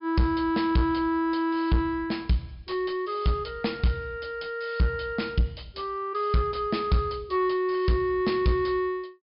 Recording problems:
treble missing; nothing above 5.5 kHz
distortion; soft clipping, signal-to-distortion ratio 10 dB

